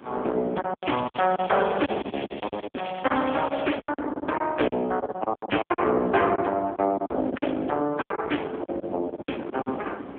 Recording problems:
telephone audio; 220 Hz to 3.4 kHz, AMR-NB
distortion; soft clipping, signal-to-distortion ratio 13 dB
wind on the microphone; below 740 Hz, SNR 16 dB
lost packets; 15% of the sound replaced, filled with silence
crackling; from 1 to 4 s; loose cable, SNR 15 dB

